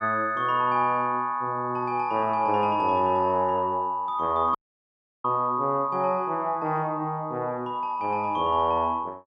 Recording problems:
audio cutting out; at 4.5 s for 0.5 s

